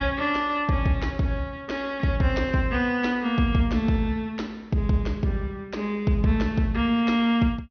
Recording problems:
low-pass filter; nothing above 6.1 kHz

